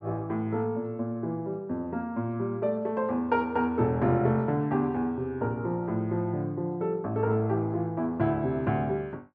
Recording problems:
none

